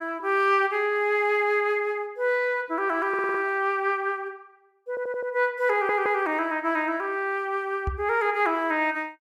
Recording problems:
audio stuttering; at 3 s, at 5 s and at 5.5 s
microphone bump; at 8 s; peak -1 dB vs average level

